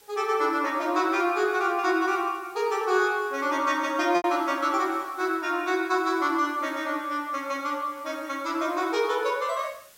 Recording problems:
background hiss; slope 0 dB per octave, SNR 26 dB
lost packets; 0.8% of the sound replaced, filled with repeated pitch periods

